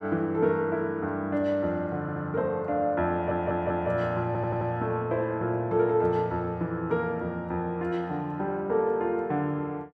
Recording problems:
audio stuttering; at 2 s, at 3 s and at 4.5 s

